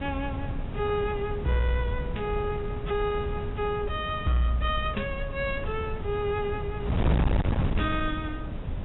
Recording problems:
low-pass filter; nothing above 3.8 kHz
distortion; soft clipping, signal-to-distortion ratio 7 dB
wind noise; below 180 Hz, SNR 3 dB

